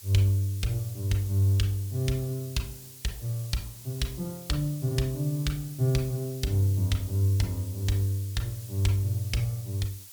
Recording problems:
background hiss; slope +3 dB per octave, SNR 16 dB

